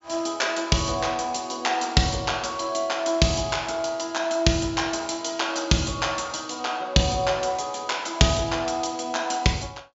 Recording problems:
treble missing; nothing above 7.4 kHz

